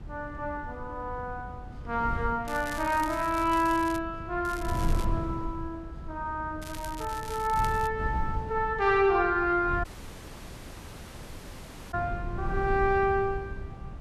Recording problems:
wind noise; below 130 Hz, SNR 9 dB
crackling; from 2.5 to 4 s, at 4.5 s and from 6.5 to 8 s; loose cable, SNR 16 dB
dropout; at 10 s for 2 s

